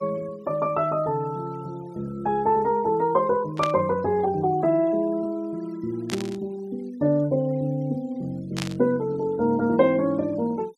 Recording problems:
denoising artefacts; signal-to-artefact ratio 27 dB
burst of static; at 3.5 s, at 6 s and at 8.5 s; peak -1 dB vs average level

